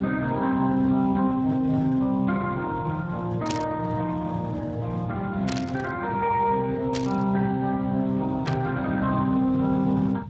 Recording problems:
codec artefacts; Speex, log-spectral distance 3 dB
rumble; below 180 Hz, SNR 12 dB
static burst; 4 times, first at 3.5 s; peak -3 dB vs average level

